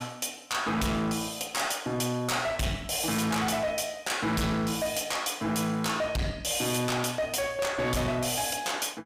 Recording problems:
distorted audio; hard clipping, signal-to-distortion ratio 6 dB

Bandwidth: 15.5 kHz